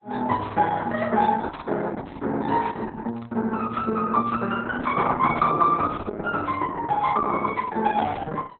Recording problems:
lossy codec; Opus, log-spectral distance 3 dB, nothing above 3.9 kHz

